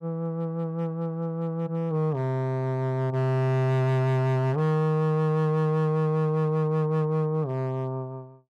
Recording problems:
distorted audio; hard clipping, signal-to-distortion ratio 11 dB

